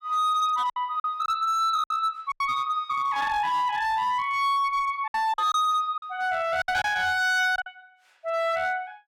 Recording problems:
distortion; hard clipping, signal-to-distortion ratio 11 dB
lost packets; 7% of the sound replaced, filled with silence

